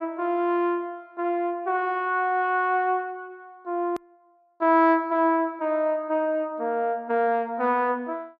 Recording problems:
edit click; at 4 s

